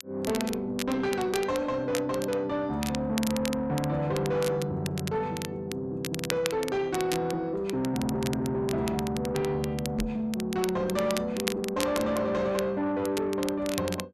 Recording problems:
distortion; soft clipping, signal-to-distortion ratio 11 dB
crackle; vinyl, SNR 10 dB
knock on the microphone; at 10 s; peak -1 dB vs average level

